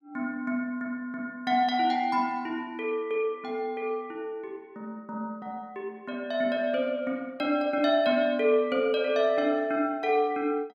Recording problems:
none

